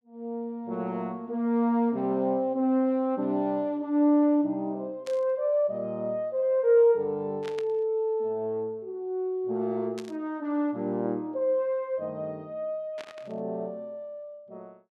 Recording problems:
static burst; 4 times, first at 5 s; peak -10 dB vs average level

